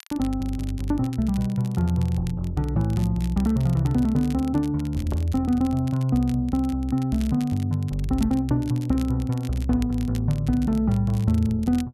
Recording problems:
crackling; vinyl, SNR 23 dB

